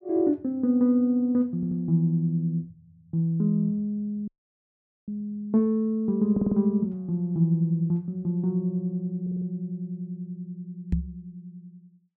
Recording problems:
audio stuttering; at 1.5 s, at 6.5 s and at 9 s
audio cutting out; at 4.5 s for 1 s
knock on the microphone; at 11 s; peak +4 dB vs average level

